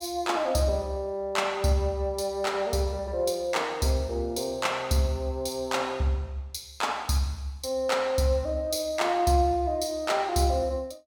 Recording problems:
none

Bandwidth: 18 kHz